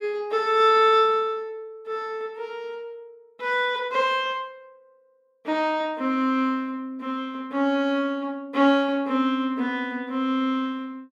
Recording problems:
none

